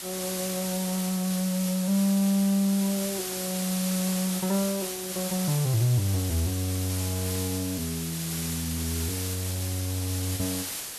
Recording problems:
background hiss; slope 0 dB per octave, SNR 4 dB

